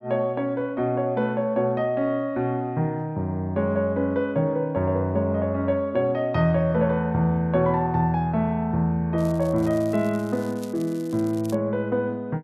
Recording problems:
crackling; from 9 to 12 s; loose cable, SNR 24 dB

